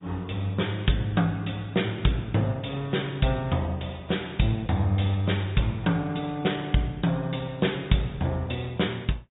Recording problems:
treble missing; nothing above 3.8 kHz
lossy codec; AAC, then MP2, log-spectral distance 4 dB

